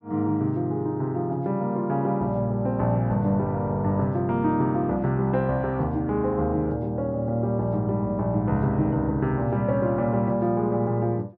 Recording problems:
none

